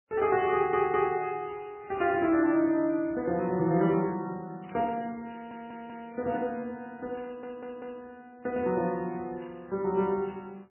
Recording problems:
lossy compression; MP3, log-spectral distance 4 dB, nothing above 2.8 kHz
audio stuttering; at 0.5 s, at 5.5 s and at 7 s
crackle; from 2.5 to 6.5 s; loose cable, SNR 27 dB

